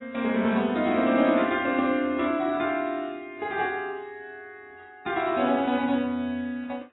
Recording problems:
lossy compression; AAC, log-spectral distance 2 dB, nothing above 3.8 kHz

